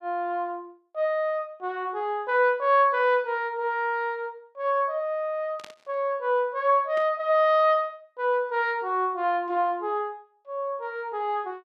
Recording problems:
burst of static; at 5.5 s and at 7 s; peak -12 dB vs average level

